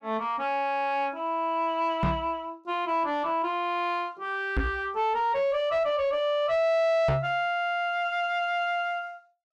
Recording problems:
distortion; soft clipping, signal-to-distortion ratio 10 dB
knock on the microphone; at 2 s, at 4.5 s and at 7 s; peak +5 dB vs average level

